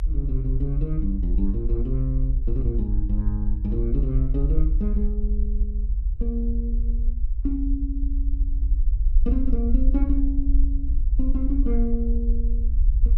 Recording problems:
rumble; below 54 Hz, SNR -4 dB

